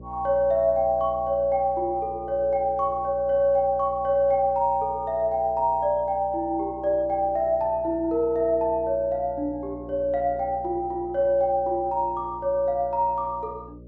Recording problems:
hum; 60 Hz, harmonics up to 600 Hz, SNR 20 dB

